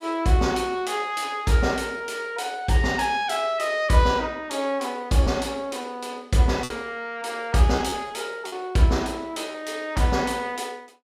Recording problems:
lost packets; 3% of the sound replaced, filled with repeated pitch periods

